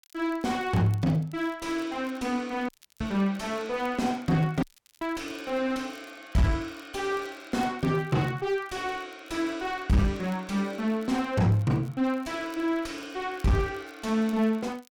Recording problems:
distorted audio; soft clipping, signal-to-distortion ratio 7 dB
crackle; vinyl, SNR 29 dB
dropout; at 2.5 s and at 4.5 s

